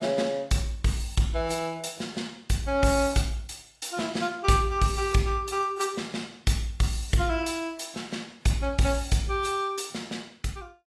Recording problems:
codec artefacts; AAC, log-spectral distance 3 dB, nothing above 12 kHz

